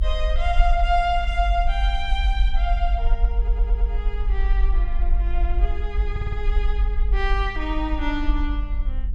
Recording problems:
hum; 50 Hz, harmonics up to 700 Hz, SNR 16 dB
low-frequency rumble; below 48 Hz, SNR -3 dB
stutter; at 3.5 s and at 6 s

